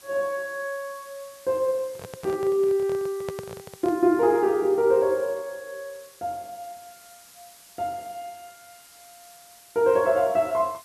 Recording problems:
hiss; slope +1 dB per octave, SNR 23 dB
microphone handling noise; from 2 to 4 s; peak -6 dB vs average level

